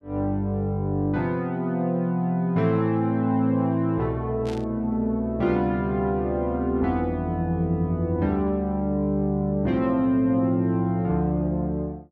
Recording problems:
burst of static; at 4.5 s; peak -12 dB vs average level

